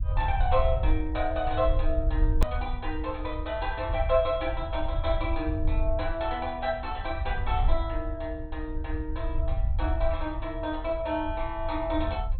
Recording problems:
lossy compression; MP2, log-spectral distance 2 dB, nothing above 4 kHz
low-frequency rumble; below 68 Hz, SNR 2 dB
hard cut with a click; at 2.5 s

